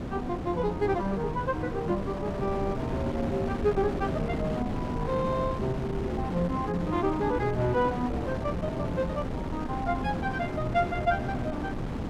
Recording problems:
wind noise; below 420 Hz, SNR 3 dB

